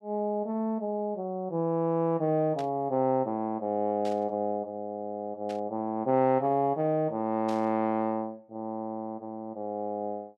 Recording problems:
static burst; 4 times, first at 2.5 s; peak -11 dB vs average level

